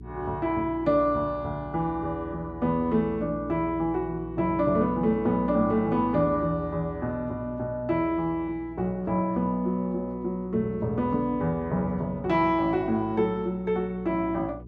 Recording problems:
hum; 60 Hz, harmonics up to 420 Hz, SNR 17 dB

